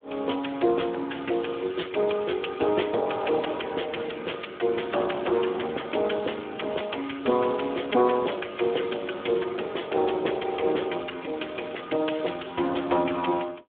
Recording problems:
telephone audio; 260 Hz to 3.5 kHz, Speex

